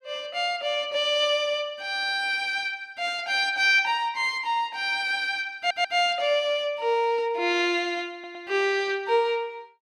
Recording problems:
stutter; at 5.5 s and at 8 s

